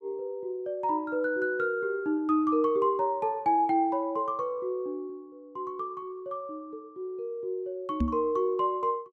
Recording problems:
microphone bump; at 8 s; peak +5 dB vs average level

